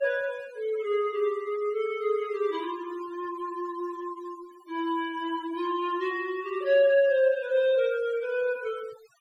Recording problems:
noise reduction artefacts; signal-to-artefact ratio 21 dB

